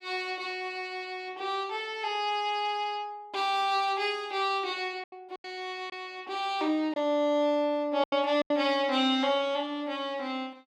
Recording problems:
packet loss; 3% of the sound replaced, filled with silence

